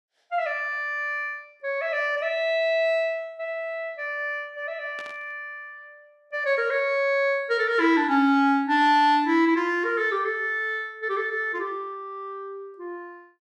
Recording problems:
burst of static; at 5 s; peak -14 dB vs average level

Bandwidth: 13.5 kHz